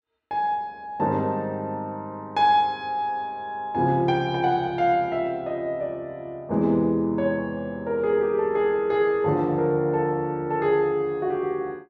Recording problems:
none

